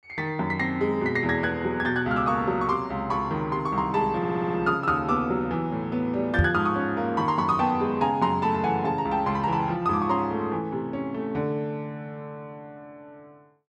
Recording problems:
stutter; at 4 s
knock on the microphone; at 6.5 s; peak +7 dB vs average level

